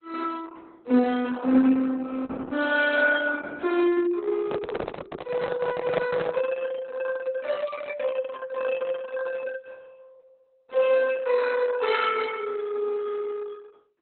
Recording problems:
lossy compression; Opus, log-spectral distance 4 dB, nothing above 4 kHz
microphone handling noise; from 4.5 to 6.5 s; peak +2 dB vs average level

